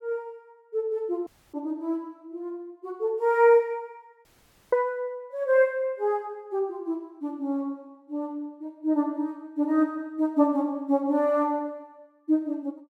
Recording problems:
audio cutting out; at 1.5 s and at 4.5 s

